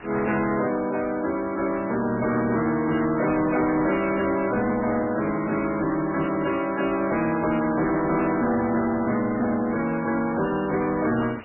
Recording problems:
lossy codec; MP3, log-spectral distance 9 dB, nothing above 2.5 kHz
distorted audio; soft clipping, signal-to-distortion ratio 11 dB
background hiss; SNR 20 dB
microphone handling noise; from 4.5 to 6.5 s; peak -5 dB vs average level

